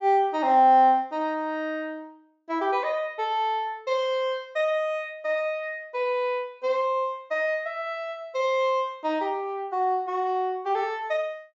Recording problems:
treble missing; nothing above 8 kHz

